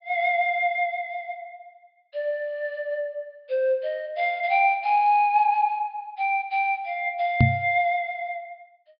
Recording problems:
low-pass filter; nothing above 5.5 kHz
microphone thump; at 7.5 s; peak +8 dB vs average level

